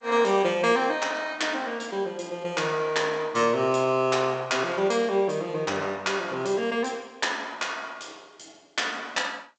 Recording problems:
codec artefacts; G.722, log-spectral distance 4 dB, nothing above 7.8 kHz

